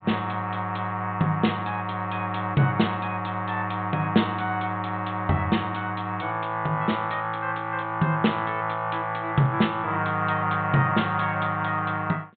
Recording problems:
treble cut off; nothing above 4 kHz

